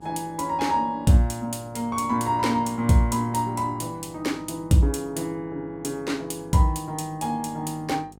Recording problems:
hum; 50 Hz, harmonics up to 950 Hz, SNR 24 dB

